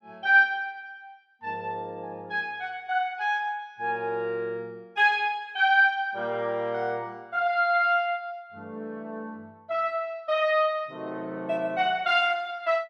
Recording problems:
none

